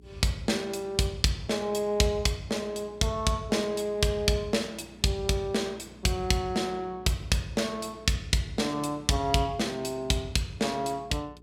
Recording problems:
hum; 60 Hz, harmonics up to 420 Hz, SNR 25 dB

